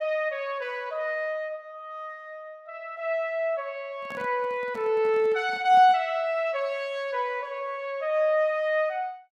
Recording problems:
handling noise; from 4 to 6 s; peak -12 dB vs average level

